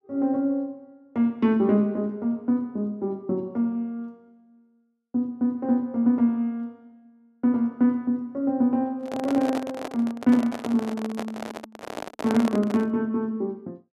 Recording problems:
microphone handling noise; from 9 to 13 s; peak -1 dB vs average level

